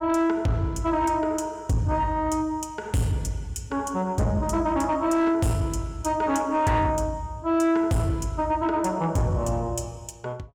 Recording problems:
distortion; soft clipping, signal-to-distortion ratio 11 dB

